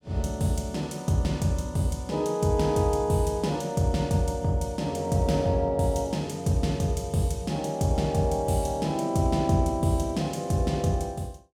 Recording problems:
none

